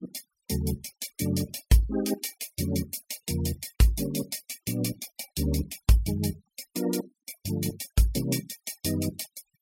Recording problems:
denoising artefacts; signal-to-artefact ratio 19 dB

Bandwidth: 16 kHz